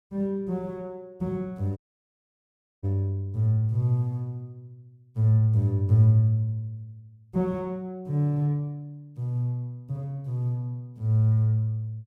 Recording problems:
dropout; at 2 s for 1 s

